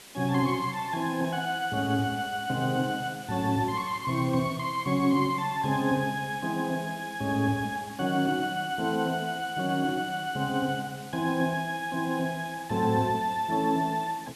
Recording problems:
background hiss; slope -1 dB per octave, SNR 18 dB

